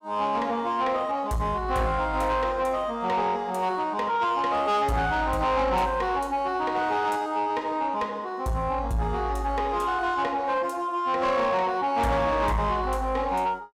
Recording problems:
distorted audio; soft clipping, signal-to-distortion ratio 11 dB

